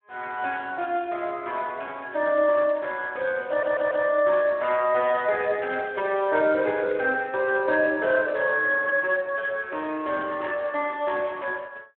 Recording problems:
phone line; 280 Hz to 3.5 kHz, Speex
audio stuttering; at 3.5 s
burst of static; at 7.5 s, at 9 s and at 10 s; peak -13 dB vs average level

